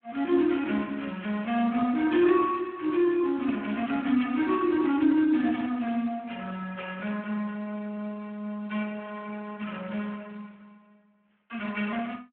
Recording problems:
phone line; 220 Hz to 3.5 kHz, Speex

